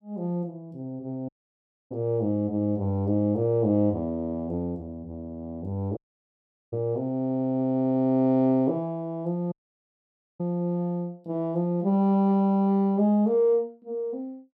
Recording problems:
dropout; at 1.5 s for 0.5 s, at 6 s for 1 s and at 9.5 s for 1 s

